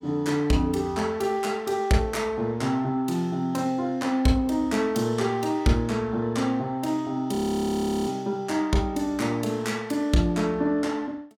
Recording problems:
frozen audio; at 7.5 s for 0.5 s

